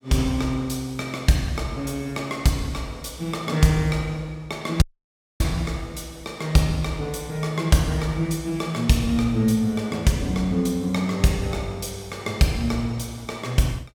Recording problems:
audio cutting out; at 5 s for 0.5 s

